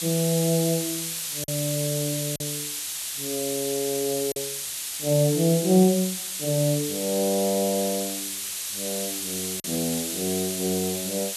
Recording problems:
hiss; slope +4 dB per octave, SNR 3 dB
packet loss; 1.6% of the sound replaced, filled with silence

